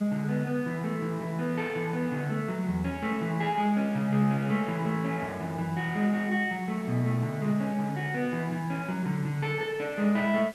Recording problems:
hiss; slope -3 dB per octave, SNR 23 dB

